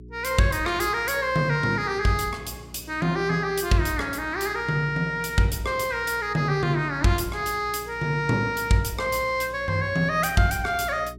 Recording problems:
hum; 60 Hz, harmonics up to 420 Hz, SNR 20 dB

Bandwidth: 16.5 kHz